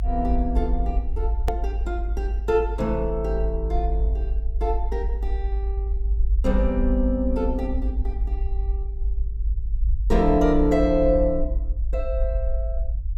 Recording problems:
rumble; below 52 Hz, strongest tone 50 Hz, SNR 1 dB
click at an edit; at 1.5 s

